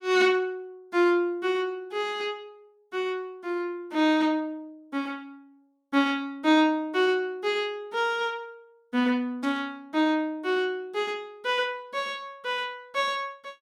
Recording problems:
static burst; at 9.5 s; peak -13 dB vs average level

